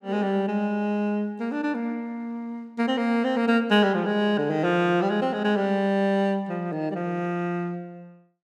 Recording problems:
none

